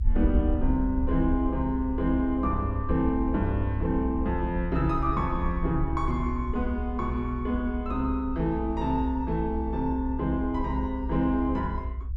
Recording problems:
rumble; below 64 Hz, SNR 5 dB

